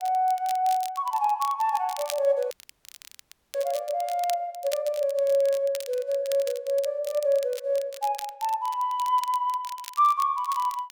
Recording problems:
crackling; vinyl, SNR 17 dB
audio cutting out; at 2.5 s for 1 s

